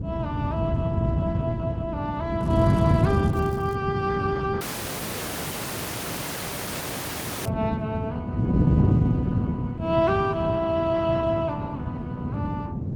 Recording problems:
lossy compression; Opus, log-spectral distance 4 dB
wind on the microphone; below 210 Hz, SNR -2 dB
crackle; from 2.5 to 4 s and at 7.5 s; loose cable, SNR 24 dB
audio cutting out; at 4.5 s for 3 s

